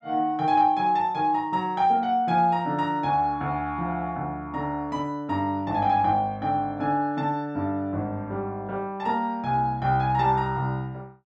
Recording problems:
none

